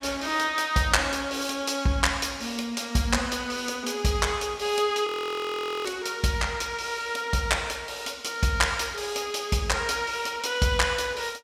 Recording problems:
frozen audio; at 5 s for 1 s

